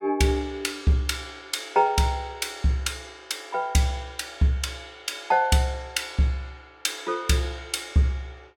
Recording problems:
none

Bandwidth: 18 kHz